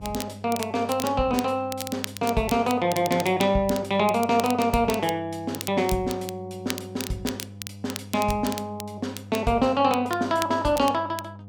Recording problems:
hum; 50 Hz, harmonics up to 700 Hz, SNR 17 dB
crackling; vinyl, SNR 13 dB

